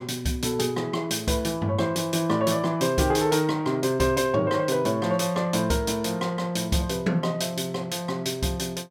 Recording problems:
none

